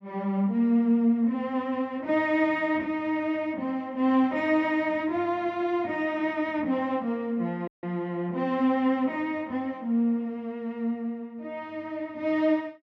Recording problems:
audio cutting out; at 7.5 s

